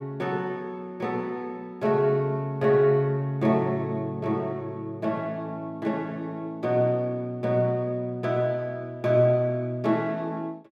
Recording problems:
none

